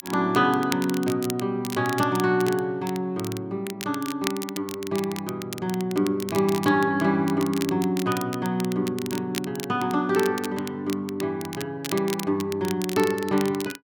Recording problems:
crackling; vinyl, SNR 12 dB

